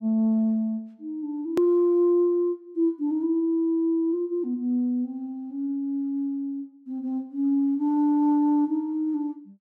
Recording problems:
edit click; at 1.5 s

